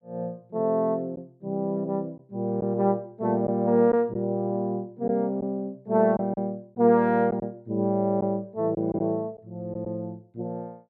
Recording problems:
lost packets; 2% of the sound replaced, filled with silence

